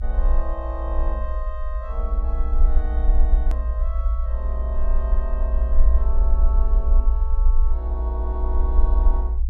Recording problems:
rumble; below 58 Hz, SNR -12 dB
edit click; at 3.5 s

